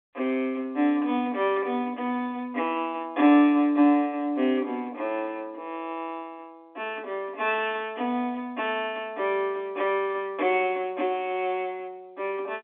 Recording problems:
phone line; 260 Hz to 3.5 kHz, G.711

